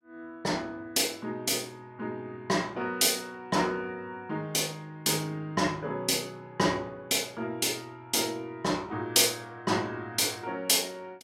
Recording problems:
none

